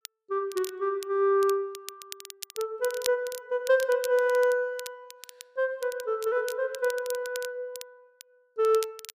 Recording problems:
crackling; vinyl, SNR 15 dB

